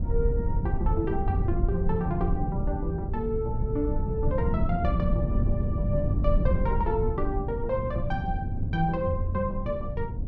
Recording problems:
low-frequency rumble; below 110 Hz, SNR 0 dB

